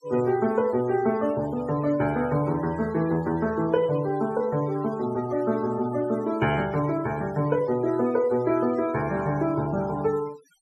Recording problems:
denoising artefacts; signal-to-artefact ratio 20 dB

